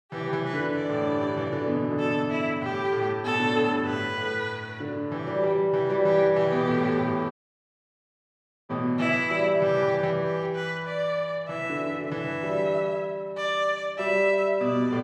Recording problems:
dropout; at 7.5 s for 1.5 s

